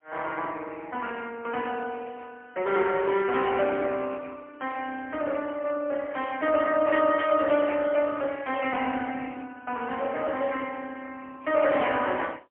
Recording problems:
phone line; 280 Hz to 3.2 kHz, AMR-NB, then MP3

